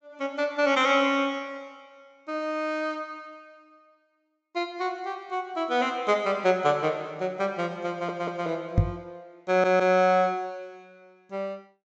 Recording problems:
treble missing; nothing above 8 kHz
audio stuttering; at 8 s and at 9.5 s
microphone thump; at 9 s; peak +9 dB vs average level

